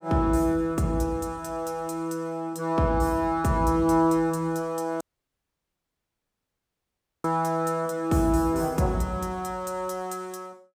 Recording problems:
audio cutting out; at 5 s for 2 s

